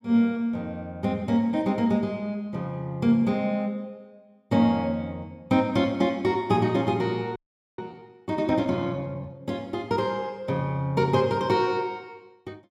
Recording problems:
frozen audio; at 7.5 s

